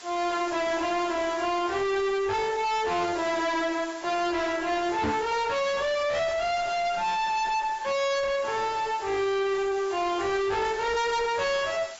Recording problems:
lossy compression; AAC, log-spectral distance 7 dB, nothing above 7.6 kHz
distortion; hard clipping, uneven, signal-to-distortion ratio 5 dB
background hiss; slope 0 dB per octave, SNR 18 dB
microphone bump; at 5 s; peak +2 dB vs average level

